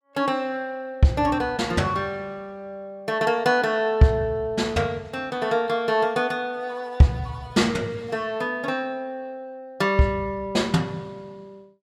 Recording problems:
none

